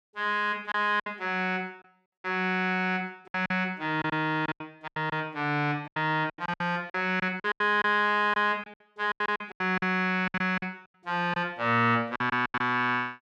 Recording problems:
packet loss; 13% of the sound replaced, filled with silence

